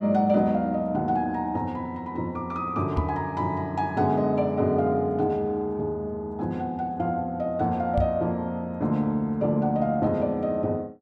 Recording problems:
microphone bump; at 3 s and at 8 s; peak +3 dB vs average level

